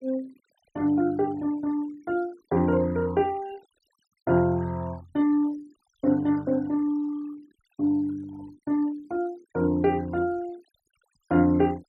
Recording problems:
denoising artefacts; signal-to-artefact ratio 25 dB

